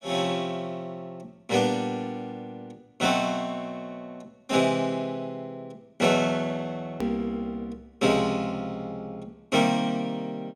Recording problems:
click at an edit; at 7 s

